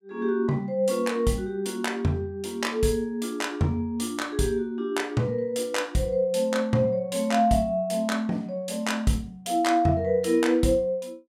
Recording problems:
none

